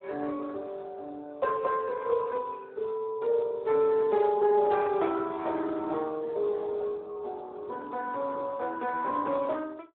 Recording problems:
phone line; 300 Hz to 2.6 kHz, Speex

